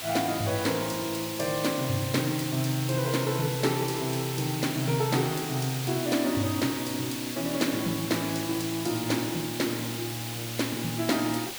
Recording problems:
hiss; slope 0 dB per octave, SNR 6 dB

